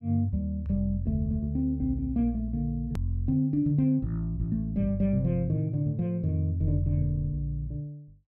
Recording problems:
hard cut with a click; at 3 s

